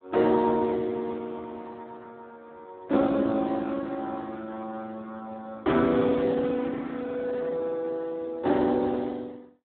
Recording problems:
phone line; 190 Hz to 2.2 kHz, Speex

